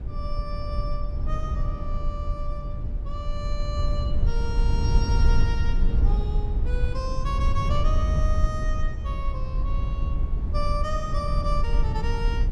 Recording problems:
rumble; below 70 Hz, SNR -8 dB

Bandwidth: 14.5 kHz